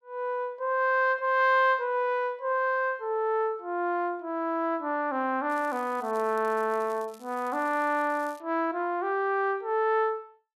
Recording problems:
crackle; from 5.5 to 8.5 s; loose cable, SNR 27 dB

